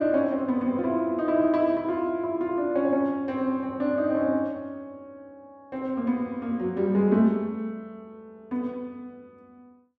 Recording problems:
none

